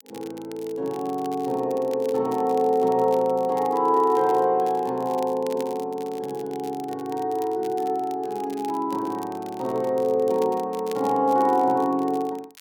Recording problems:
crackling; vinyl, SNR 23 dB

